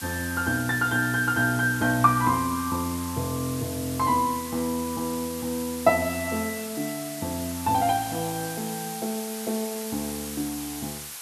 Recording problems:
background hiss; SNR 9 dB

